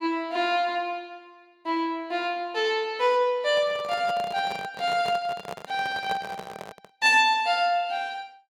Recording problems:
handling noise; from 3.5 to 7 s; peak -6 dB vs average level

